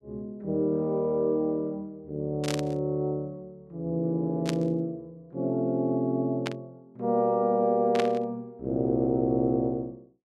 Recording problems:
burst of static; 4 times, first at 2.5 s; peak -1 dB vs average level

